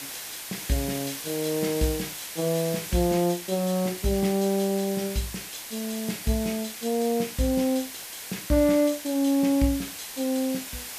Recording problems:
background hiss; slope +1 dB per octave, SNR 9 dB

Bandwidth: 14.5 kHz